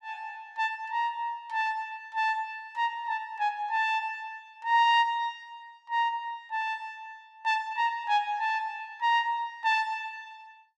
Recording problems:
none

